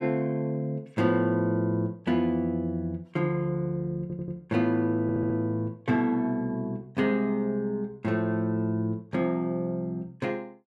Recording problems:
stutter; at 4 s and at 5 s

